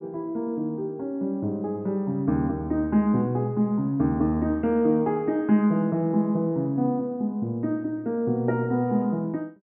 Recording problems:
treble cut off; nothing above 3.2 kHz

